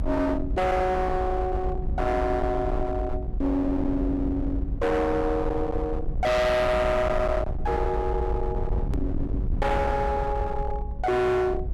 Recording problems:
distorted audio; hard clipping, signal-to-distortion ratio 6 dB
low-frequency rumble; below 180 Hz, SNR 5 dB
hard cut with a click; at 9 s

